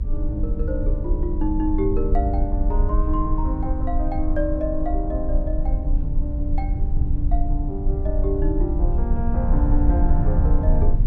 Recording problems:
low-frequency rumble; below 60 Hz, SNR -4 dB

